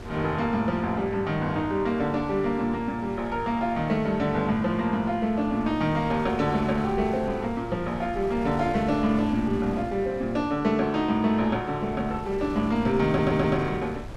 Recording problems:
wind noise; below 380 Hz, SNR 15 dB
audio stuttering; at 13 s

